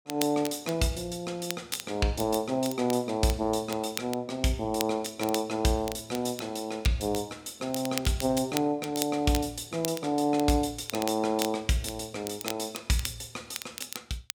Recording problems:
crackle; vinyl, SNR 10 dB

